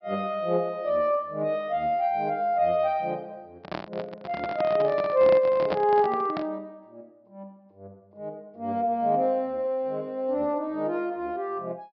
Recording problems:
low-pass filter; nothing above 5.5 kHz
handling noise; from 3.5 to 6.5 s; peak -1 dB vs average level

